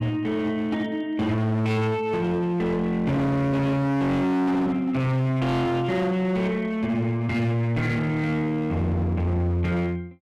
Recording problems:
distortion; hard clipping, uneven, signal-to-distortion ratio 6 dB

